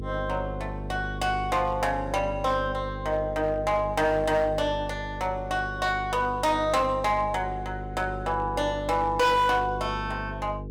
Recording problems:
distorted audio; hard clipping, signal-to-distortion ratio 12 dB
hum; 50 Hz, harmonics up to 500 Hz, SNR 10 dB

